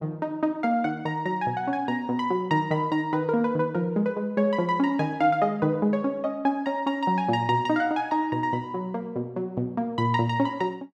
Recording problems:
none

